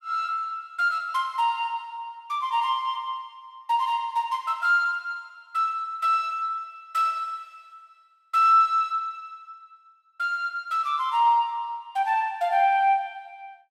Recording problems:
none

